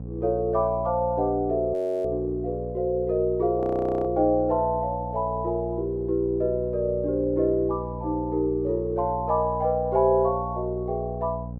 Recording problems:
electrical hum; 60 Hz, harmonics up to 540 Hz, SNR 10 dB
frozen audio; at 1.5 s and at 3.5 s

